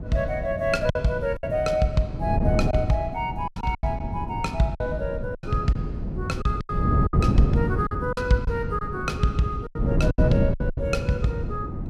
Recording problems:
wind noise; below 200 Hz, SNR 1 dB
packet loss; 9% of the sound replaced, filled with silence

